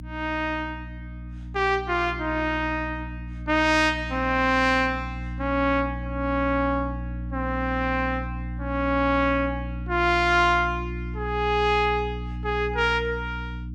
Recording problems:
electrical hum; 60 Hz, harmonics up to 300 Hz, SNR 10 dB

